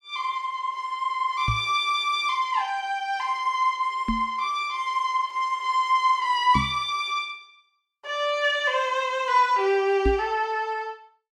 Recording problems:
knock on the microphone; 4 times, first at 1.5 s; peak +2 dB vs average level

